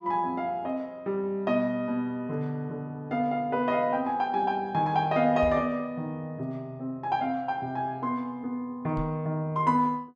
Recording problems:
microphone bump; at 5.5 s and at 9 s; peak -3 dB vs average level

